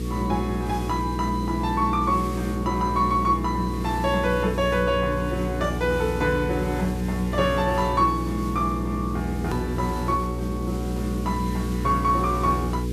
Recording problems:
hum; 60 Hz, harmonics up to 480 Hz, SNR 4 dB
background hiss; slope 0 dB per octave, SNR 19 dB
click at an edit; at 9.5 s

